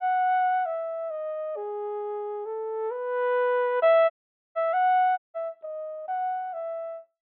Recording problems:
low-pass filter; nothing above 4 kHz
audio cutting out; at 4 s and at 5 s

